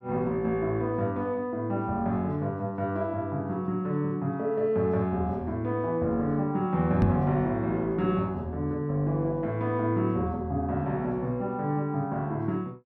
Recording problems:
microphone thump; at 7 s; peak +7 dB vs average level

